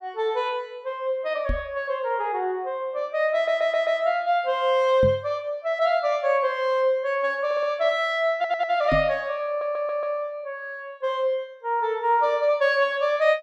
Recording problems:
microphone bump; at 1.5 s, at 5 s and at 9 s; peak 0 dB vs average level
stutter; 4 times, first at 3.5 s

